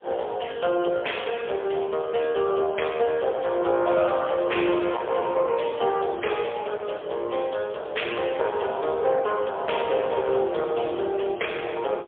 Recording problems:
telephone audio; 340 Hz to 3.4 kHz, AMR-NB, then MP3
distorted audio; hard clipping, uneven, signal-to-distortion ratio 12 dB

